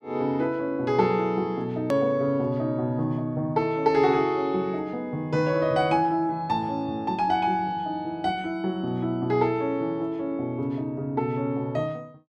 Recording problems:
hard cut with a click; at 2 s

